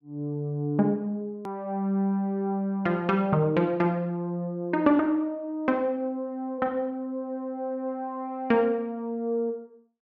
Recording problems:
hard cut with a click; at 1.5 s

